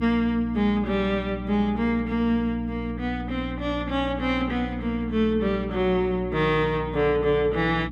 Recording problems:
electrical hum; 60 Hz, harmonics up to 300 Hz, SNR 10 dB

